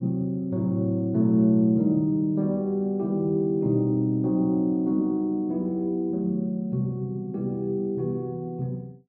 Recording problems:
none

